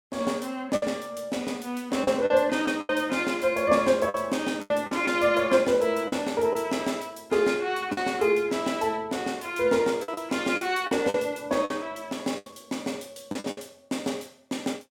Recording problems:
lost packets; 7% of the sound replaced, filled with the last packet

